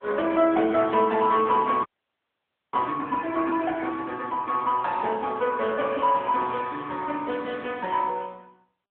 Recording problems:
phone line; 260 Hz to 3.4 kHz, AMR-NB
frozen audio; at 2 s for 1 s

